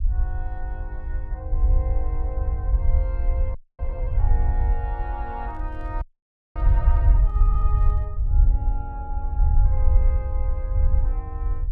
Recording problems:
rumble; below 66 Hz, SNR -14 dB
audio freezing; at 3.5 s and at 6 s for 0.5 s
handling noise; from 5.5 to 8 s; peak -12 dB vs average level

